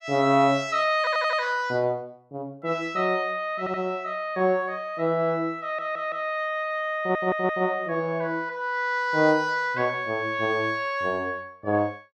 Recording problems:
stutter; 4 times, first at 1 s

